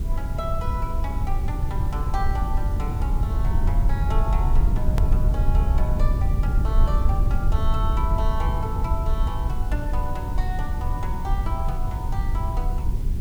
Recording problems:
hiss; slope -1 dB per octave, SNR 16 dB
low-frequency rumble; below 76 Hz, SNR -8 dB
click at an edit; at 5 s

